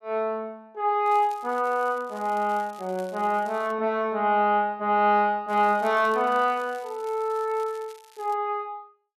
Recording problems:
crackle; from 1 to 3.5 s and from 5.5 to 8.5 s; loose cable, SNR 27 dB

